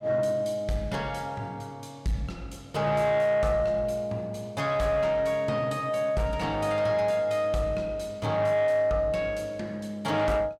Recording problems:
distortion; soft clipping, signal-to-distortion ratio 12 dB

